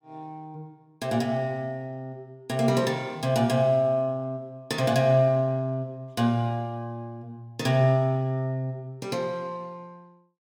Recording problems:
none

